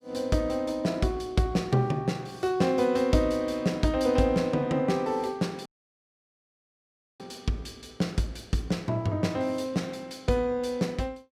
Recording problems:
audio cutting out; at 5.5 s for 1.5 s

